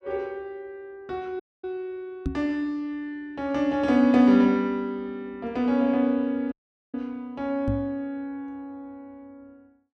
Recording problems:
audio cutting out; at 1.5 s and at 6.5 s
microphone thump; at 2.5 s and at 7.5 s; peak +1 dB vs average level

